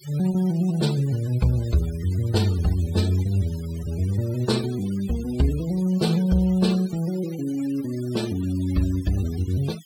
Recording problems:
noise reduction artefacts; signal-to-artefact ratio 19 dB

